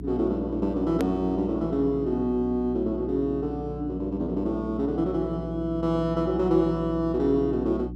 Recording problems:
hum; 60 Hz, harmonics up to 360 Hz, SNR 10 dB
hard cut with a click; at 1 s

